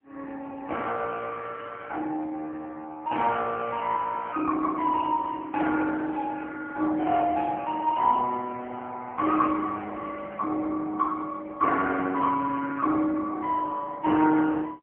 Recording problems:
phone line; 240 Hz to 3.4 kHz, AMR-NB

